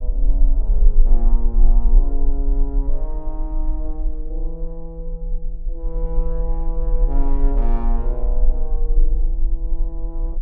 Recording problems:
rumble; below 36 Hz, strongest tone 20 Hz, SNR -11 dB

